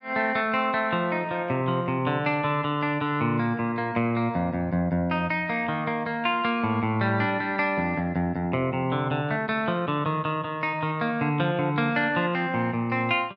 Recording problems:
none

